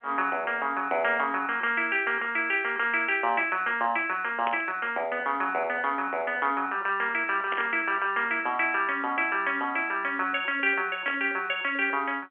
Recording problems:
phone line; 220 Hz to 3.2 kHz, G.711
static burst; at 4.5 s, at 7.5 s and at 11 s; peak -3 dB vs average level

